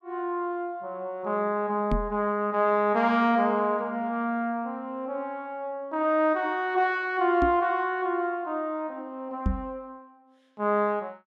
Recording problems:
knock on the microphone; at 2 s, at 7.5 s and at 9.5 s; peak +4 dB vs average level

